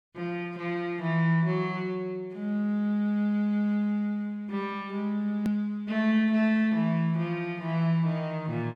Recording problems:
click at an edit; at 5.5 s

